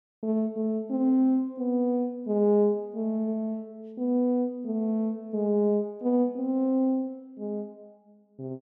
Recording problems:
none

